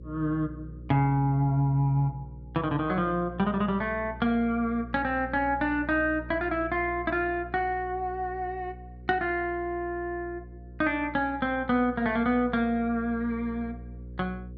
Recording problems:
hum; 60 Hz, harmonics up to 540 Hz, SNR 16 dB

